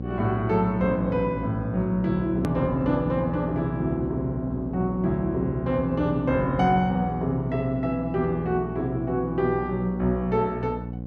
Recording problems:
hum; 60 Hz, harmonics up to 780 Hz, SNR 8 dB
click at an edit; at 2.5 s

